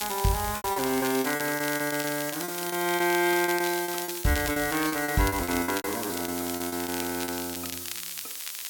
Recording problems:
hiss; slope +3 dB per octave, SNR 6 dB
crackling; vinyl, SNR 10 dB
packet loss; 17% of the sound replaced, filled with repeated pitch periods

